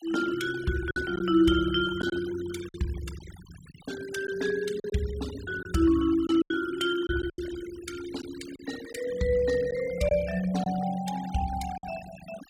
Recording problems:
denoising artefacts; signal-to-artefact ratio 16 dB
lost packets; 5% of the sound replaced, filled with silence

